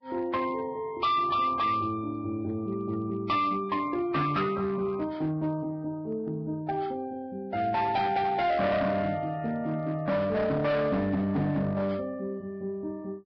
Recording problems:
lossy codec; Vorbis, log-spectral distance 2 dB, nothing above 5.2 kHz
distortion; hard clipping, signal-to-distortion ratio 11 dB

